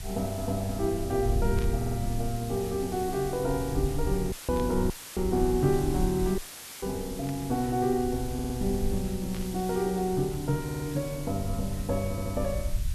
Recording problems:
hiss; slope +1 dB per octave, SNR 14 dB
rumble; below 82 Hz, SNR 7 dB
static burst; 4 times, first at 1.5 s; peak -10 dB vs average level
stutter; 4 times, first at 2 s
dropout; at 4.5 s, at 5 s and at 6.5 s; filled with static

